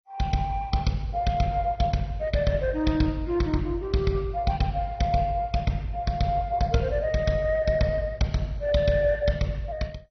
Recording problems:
lossy codec; MP2, log-spectral distance 2 dB, nothing above 6 kHz

